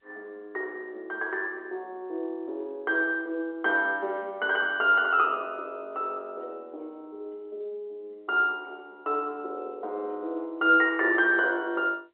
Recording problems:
telephone audio; 300 Hz to 3.1 kHz, G.711

